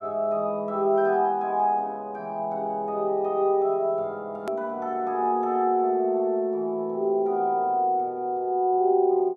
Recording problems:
click at an edit; at 4.5 s

